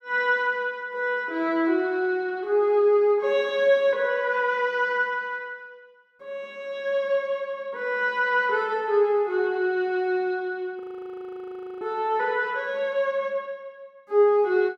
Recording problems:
frozen audio; at 11 s for 1 s

